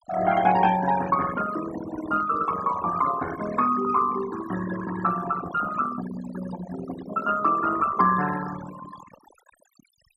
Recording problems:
denoising artefacts; signal-to-artefact ratio 10 dB

